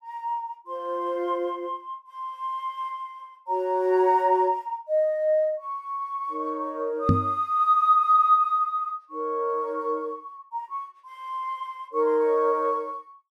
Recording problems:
microphone thump; at 7 s; peak +8 dB vs average level

